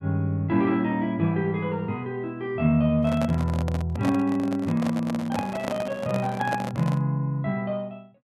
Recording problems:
handling noise; from 3 to 7 s; peak 0 dB vs average level

